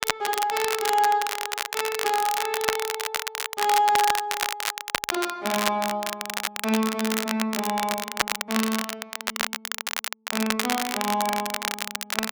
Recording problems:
crackling; vinyl, SNR 2 dB

